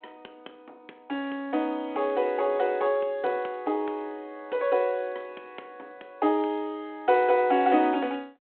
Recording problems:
telephone audio; 260 Hz to 3.8 kHz, G.726

